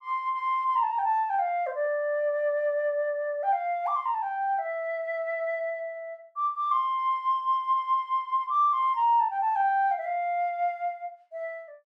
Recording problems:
none

